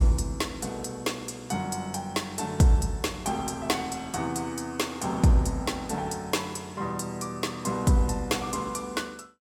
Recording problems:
none

